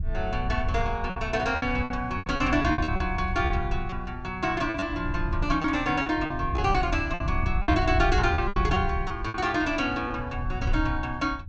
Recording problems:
low-pass filter; nothing above 8 kHz
wind noise; below 90 Hz, SNR 5 dB
packet loss; 10% of the sound replaced, filled with repeated pitch periods

